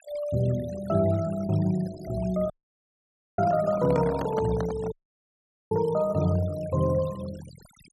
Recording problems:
noise reduction artefacts; signal-to-artefact ratio 19 dB
audio cutting out; at 2.5 s for 1 s and at 5 s for 1 s
microphone handling noise; from 3.5 to 5 s; peak -1 dB vs average level

